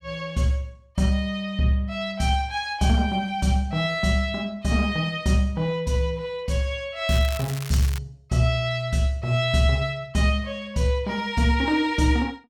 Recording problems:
crackle; at 7 s; loose cable, SNR 13 dB

